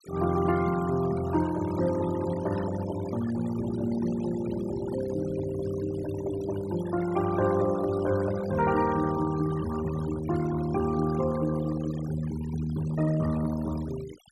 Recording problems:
noise reduction artefacts; signal-to-artefact ratio 14 dB

